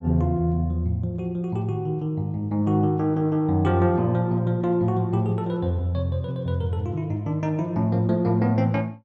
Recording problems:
none

